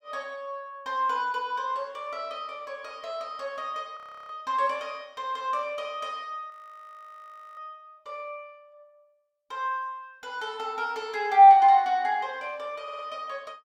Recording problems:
frozen audio; at 4 s and at 6.5 s for 1 s
stutter; at 13 s

